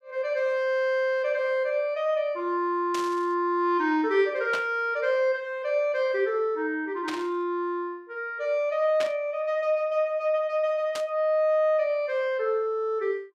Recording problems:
static burst; 5 times, first at 3 s; peak -3 dB vs average level

